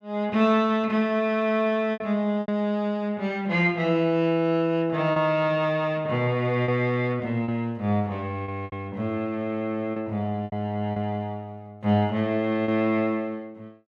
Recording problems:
lost packets; 4% of the sound replaced, filled with repeated pitch periods

